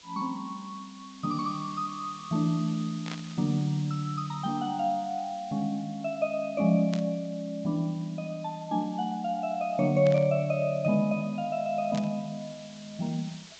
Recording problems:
treble cut off; nothing above 8 kHz
hiss; slope +1 dB per octave, SNR 21 dB
burst of static; 4 times, first at 3 s; peak -5 dB vs average level

